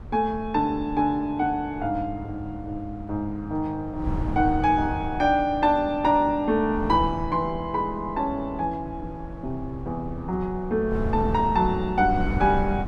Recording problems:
wind on the microphone; below 160 Hz, SNR 10 dB

